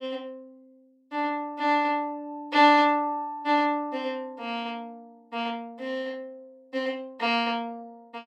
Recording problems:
none

